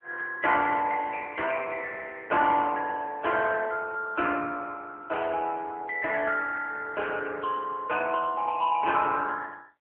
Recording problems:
phone line; 220 Hz to 3 kHz, AMR-NB

